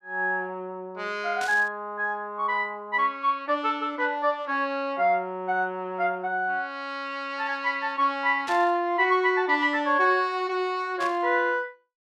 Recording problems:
burst of static; at 1.5 s, at 8.5 s and at 11 s; peak -7 dB vs average level

